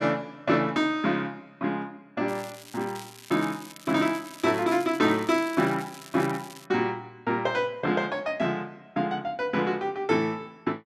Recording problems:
crackle; from 2.5 to 6.5 s; loose cable, SNR 18 dB

